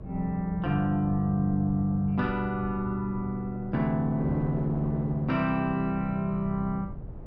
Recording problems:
low-frequency rumble; below 150 Hz, SNR 15 dB
wind on the microphone; below 480 Hz, SNR 16 dB

